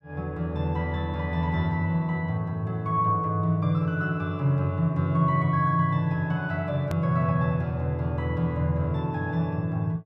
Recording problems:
hard cut with a click; at 7 s

